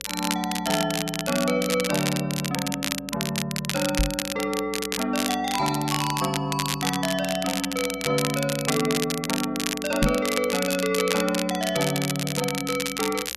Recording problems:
electrical hum; 60 Hz, harmonics up to 540 Hz, SNR 24 dB
crackling; vinyl, SNR 3 dB
knock on the microphone; at 4 s and at 10 s; peak +6 dB vs average level

